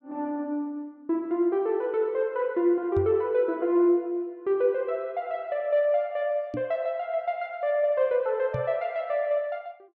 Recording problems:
knock on the microphone; at 3 s, at 6.5 s and at 8.5 s; peak -2 dB vs average level

